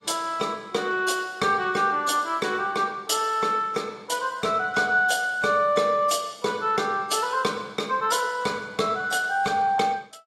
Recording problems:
codec artefacts; AAC, log-spectral distance 3 dB

